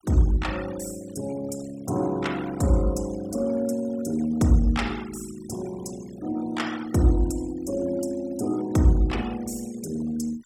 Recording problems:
denoising artefacts; signal-to-artefact ratio 19 dB

